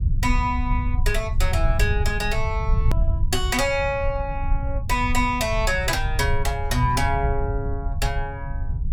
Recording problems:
rumble; below 82 Hz, SNR 1 dB
edit click; at 3 s

